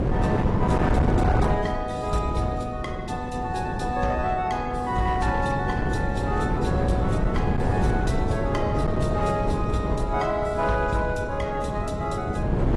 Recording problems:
codec artefacts; AAC, log-spectral distance 2 dB, nothing above 11 kHz
distortion; hard clipping, signal-to-distortion ratio 10 dB
wind on the microphone; below 350 Hz, SNR 0 dB

